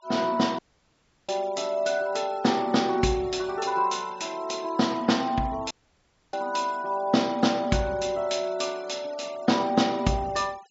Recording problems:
treble missing; nothing above 8 kHz
denoising artefacts; signal-to-artefact ratio 23 dB
dropout; at 0.5 s for 0.5 s and at 5.5 s for 0.5 s

